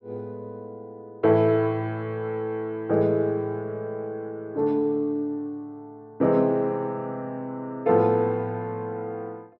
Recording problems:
none

